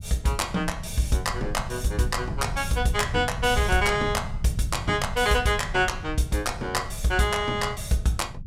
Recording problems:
low-frequency rumble; below 130 Hz, SNR 10 dB

